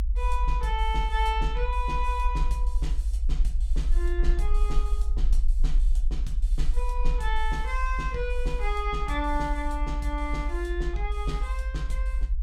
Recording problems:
rumble; below 54 Hz, SNR -3 dB

